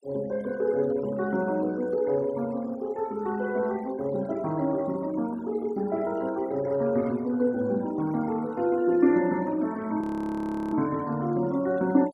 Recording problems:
denoising artefacts; signal-to-artefact ratio 22 dB
frozen audio; at 10 s for 0.5 s

